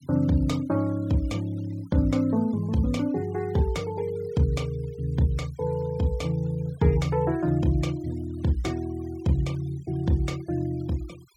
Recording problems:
denoising artefacts; signal-to-artefact ratio 25 dB

